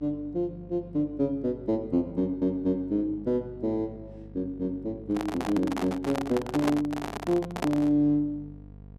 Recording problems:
electrical hum; 50 Hz, harmonics up to 700 Hz, SNR 19 dB
microphone handling noise; from 5 to 8 s; peak +3 dB vs average level

